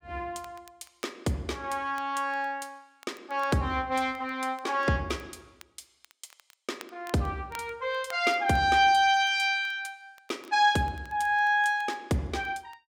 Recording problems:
crackling; vinyl, SNR 27 dB

